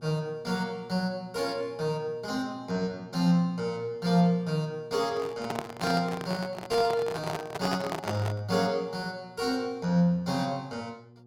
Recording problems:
mains hum; 60 Hz, harmonics up to 840 Hz, SNR 23 dB
handling noise; from 5 to 8.5 s; peak +1 dB vs average level

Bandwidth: 16.5 kHz